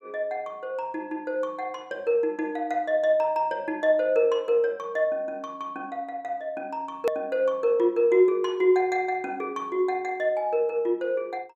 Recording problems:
hard cut with a click; at 7 s

